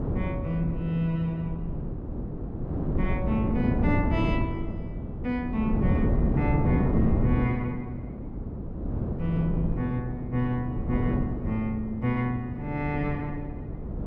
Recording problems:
wind on the microphone; below 250 Hz, SNR 0 dB

